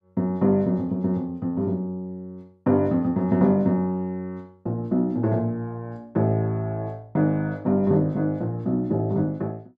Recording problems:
none

